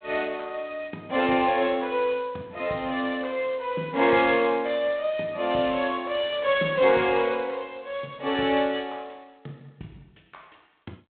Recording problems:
telephone audio; 130 Hz to 3.7 kHz, G.726

